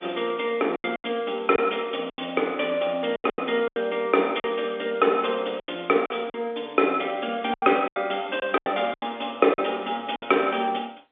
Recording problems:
telephone audio; 240 Hz to 3.6 kHz, G.711
packet loss; 10% of the sound replaced, filled with silence

